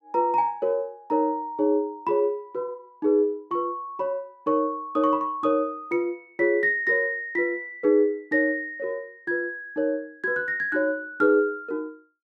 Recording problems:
none

